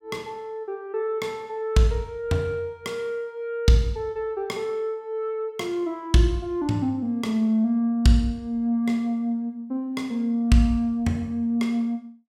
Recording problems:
none

